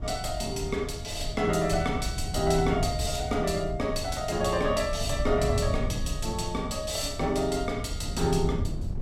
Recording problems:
wind on the microphone; below 120 Hz, SNR 6 dB

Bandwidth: 16 kHz